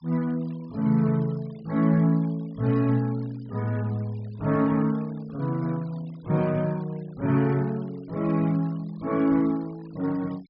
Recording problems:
treble missing; nothing above 5.5 kHz
noise reduction artefacts; signal-to-artefact ratio 26 dB

